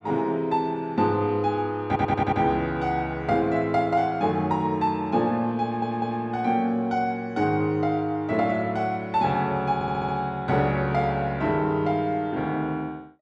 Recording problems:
stutter; at 2 s, at 5.5 s and at 9.5 s

